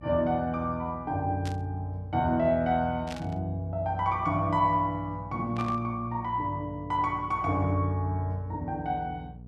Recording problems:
hum; 60 Hz, harmonics up to 480 Hz, SNR 17 dB
burst of static; at 1.5 s, at 3 s and at 5.5 s; peak -7 dB vs average level

